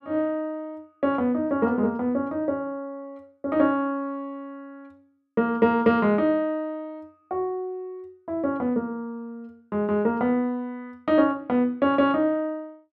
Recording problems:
none

